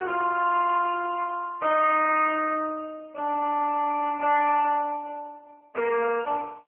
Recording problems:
telephone audio; 650 Hz to 2.3 kHz, AMR-NB
distorted audio; soft clipping, signal-to-distortion ratio 7 dB

